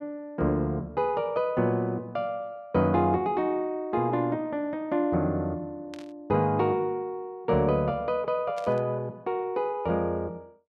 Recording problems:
static burst; at 6 s and at 8.5 s; peak -13 dB vs average level

